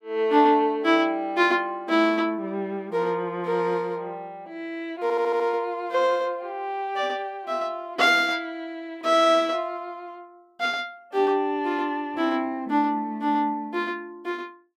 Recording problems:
stutter; at 5 s

